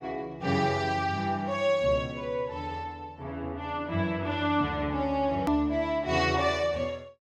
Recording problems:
hard cut with a click; at 5.5 s

